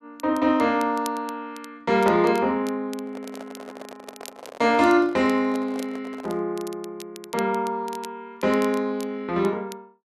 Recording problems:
crackling; vinyl, SNR 22 dB
microphone handling noise; from 3 to 6.5 s; peak -12 dB vs average level

